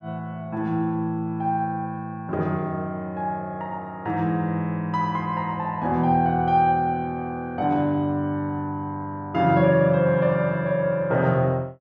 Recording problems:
none

